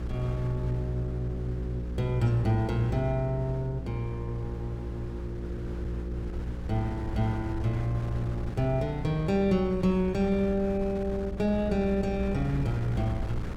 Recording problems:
mains hum; 60 Hz, harmonics up to 540 Hz, SNR 8 dB
wind on the microphone; below 130 Hz, SNR 12 dB

